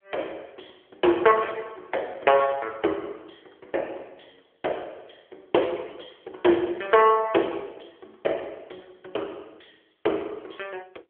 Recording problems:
phone line; 300 Hz to 3.4 kHz, AMR-NB

